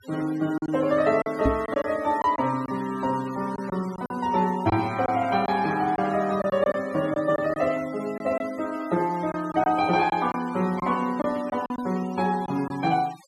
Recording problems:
denoising artefacts; signal-to-artefact ratio 18 dB
lost packets; 6% of the sound replaced, filled with silence
knock on the microphone; at 1.5 s; peak +4 dB vs average level

